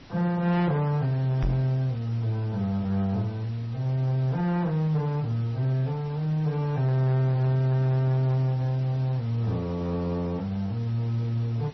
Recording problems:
codec artefacts; AAC, then MP3, log-spectral distance 2 dB, nothing above 5 kHz
distorted audio; soft clipping, signal-to-distortion ratio 11 dB
hiss; slope -4 dB per octave, SNR 21 dB
microphone bump; at 1.5 s; peak +2 dB vs average level

